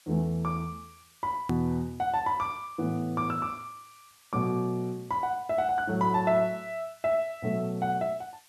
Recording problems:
background hiss; slope +3 dB per octave, SNR 27 dB
click at an edit; at 1.5 s

